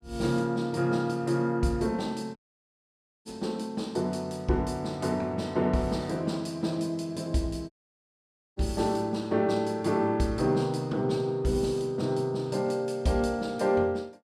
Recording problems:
dropout; at 2.5 s for 1 s and at 7.5 s for 1 s

